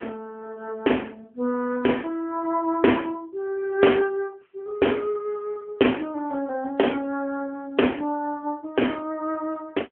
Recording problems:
telephone audio; 260 Hz to 3.3 kHz, AMR-NB

